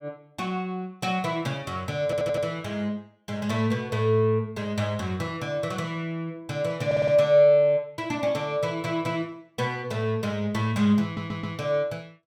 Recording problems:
stutter; at 2 s, at 7 s and at 11 s

